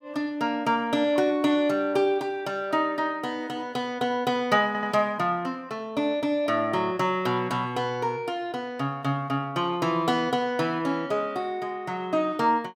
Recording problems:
audio stuttering; at 4.5 s

